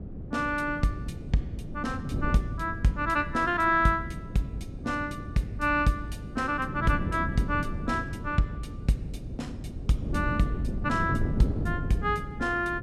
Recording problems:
wind on the microphone; below 210 Hz, SNR 6 dB

